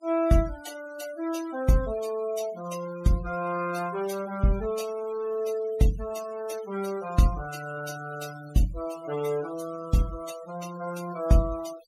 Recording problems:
noise reduction artefacts; signal-to-artefact ratio 16 dB

